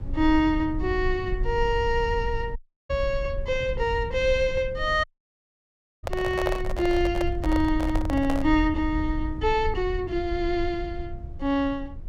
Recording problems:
rumble; below 70 Hz, SNR 8 dB
audio cutting out; at 2.5 s and at 5 s for 1 s
microphone handling noise; from 6 to 8.5 s; peak +2 dB vs average level

